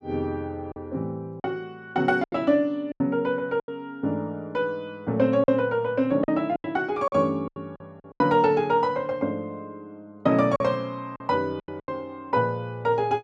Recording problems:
packet loss; 8% of the sound replaced, filled with silence

